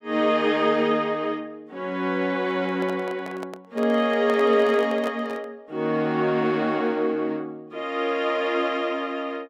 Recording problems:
microphone handling noise; from 2.5 to 5.5 s; peak -6 dB vs average level

